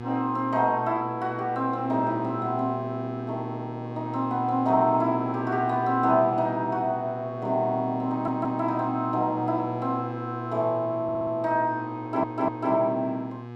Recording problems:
hum; 60 Hz, harmonics up to 1.7 kHz, SNR 10 dB
stutter; at 8 s, at 11 s and at 12 s

